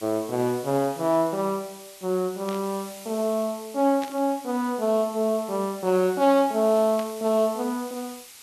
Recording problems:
background hiss; slope +2 dB per octave, SNR 18 dB
static burst; at 2.5 s, at 4 s and at 7 s; peak -10 dB vs average level

